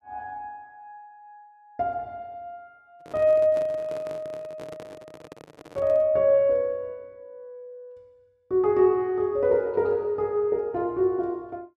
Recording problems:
handling noise; from 3 to 6 s; peak -12 dB vs average level

